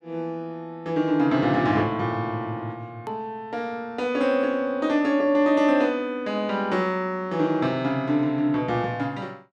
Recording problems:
edit click; at 3 s

